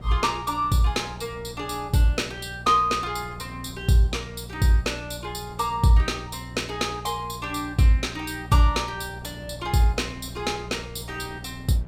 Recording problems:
hum; 60 Hz, harmonics up to 420 Hz, SNR 15 dB
wind on the microphone; below 470 Hz, SNR 23 dB

